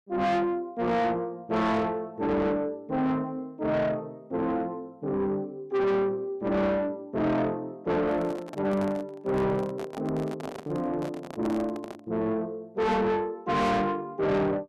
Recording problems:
distorted audio; soft clipping, signal-to-distortion ratio 7 dB
microphone handling noise; from 8 to 12 s; peak -4 dB vs average level

